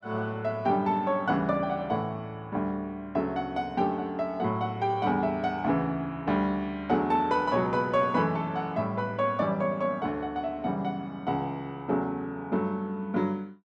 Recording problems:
none

